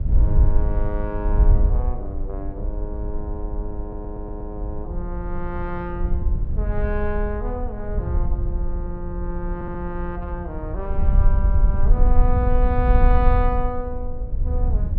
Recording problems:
treble missing; nothing above 5.6 kHz
hum; 60 Hz, harmonics up to 600 Hz, SNR 17 dB
wind on the microphone; below 62 Hz, SNR -6 dB
stutter; at 4 s and at 9.5 s

